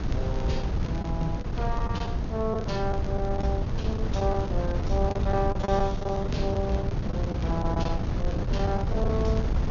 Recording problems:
treble cut off; nothing above 6.6 kHz
mains hum; 60 Hz, harmonics up to 720 Hz, SNR 6 dB
wind on the microphone; below 150 Hz, SNR -1 dB
crackling; vinyl, SNR 23 dB
packet loss; 9% of the sound replaced, filled with the last packet

